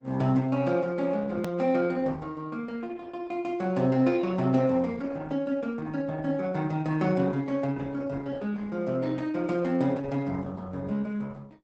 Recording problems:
lossy compression; Opus, log-spectral distance 3 dB, nothing above 19.5 kHz
edit click; at 1.5 s

